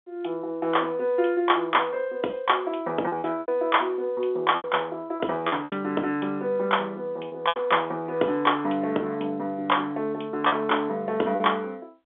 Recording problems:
telephone audio; 260 Hz to 3.4 kHz, G.711
packet loss; 5% of the sound replaced, filled with repeated pitch periods

